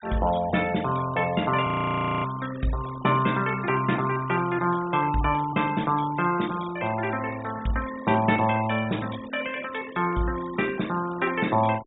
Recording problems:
treble cut off; nothing above 4 kHz
noise reduction artefacts; signal-to-artefact ratio 17 dB
audio freezing; at 1.5 s for 0.5 s

